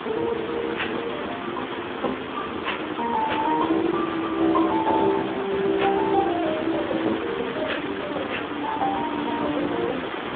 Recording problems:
phone line; 220 Hz to 3.7 kHz, Speex
background hiss; SNR 6 dB

